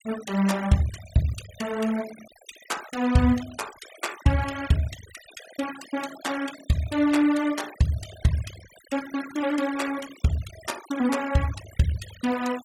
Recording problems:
noise reduction artefacts; signal-to-artefact ratio 15 dB

